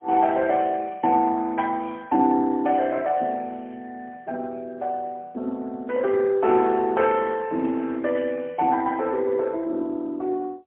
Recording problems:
telephone audio; 220 Hz to 3.1 kHz, AMR-NB, then MP3

